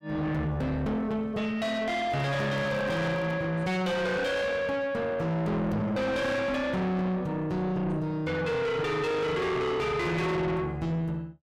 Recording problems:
distorted audio; soft clipping, signal-to-distortion ratio 5 dB
handling noise; from 2 to 3.5 s; peak -2 dB vs average level

